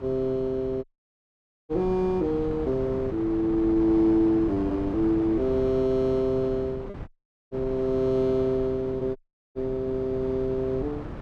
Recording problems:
wind on the microphone; below 400 Hz, SNR 12 dB
packet loss; 0.7% of the sound replaced, filled with repeated pitch periods
audio cutting out; at 1 s for 1 s, at 7 s and at 9 s

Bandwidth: 13.5 kHz